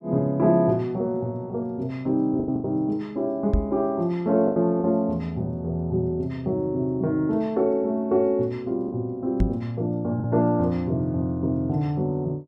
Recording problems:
packet loss; 3% of the sound replaced, filled with the last packet
knock on the microphone; at 3.5 s and at 9.5 s; peak +5 dB vs average level

